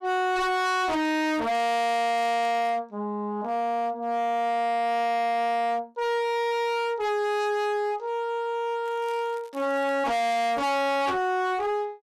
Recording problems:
distorted audio; hard clipping, signal-to-distortion ratio 6 dB
crackling; from 1 to 2.5 s and from 9 to 11 s; loose cable, SNR 30 dB

